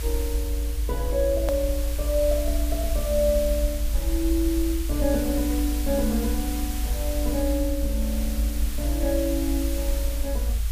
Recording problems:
background hiss; slope +1 dB per octave, SNR 8 dB
low-frequency rumble; below 56 Hz, strongest tone 54 Hz, SNR 1 dB
hard cut with a click; at 1.5 s

